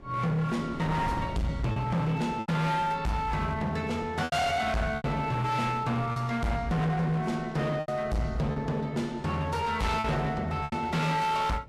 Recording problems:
codec artefacts; Vorbis, log-spectral distance 2 dB, nothing above 13.1 kHz
distortion; hard clipping, signal-to-distortion ratio 7 dB
wind on the microphone; below 450 Hz, SNR 16 dB
lost packets; 5% of the sound replaced, filled with repeated pitch periods

